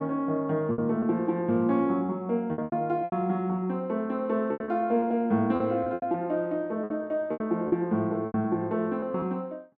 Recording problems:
packet loss; 10% of the sound replaced, filled with repeated pitch periods

